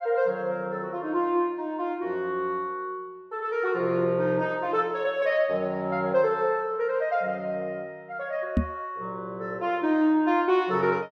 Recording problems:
microphone thump; at 8.5 s; peak +6 dB vs average level

